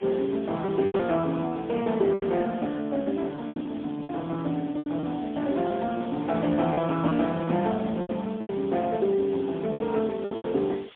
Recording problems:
telephone audio; 130 Hz to 3.6 kHz, AMR-NB, then MP3
background hiss; SNR 22 dB
lost packets; 10% of the sound replaced, filled with repeated pitch periods

